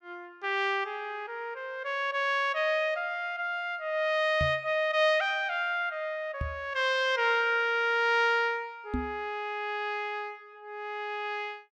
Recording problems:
microphone bump; at 4.5 s, at 6.5 s and at 9 s; peak 0 dB vs average level

